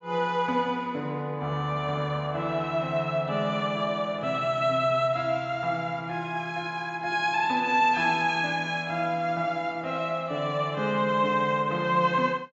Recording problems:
treble missing; nothing above 8 kHz

